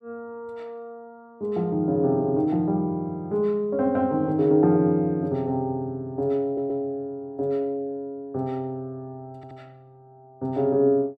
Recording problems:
stutter; at 6.5 s and at 9.5 s

